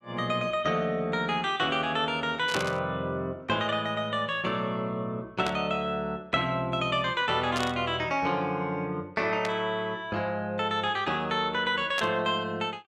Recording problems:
static burst; 5 times, first at 2.5 s; peak 0 dB vs average level

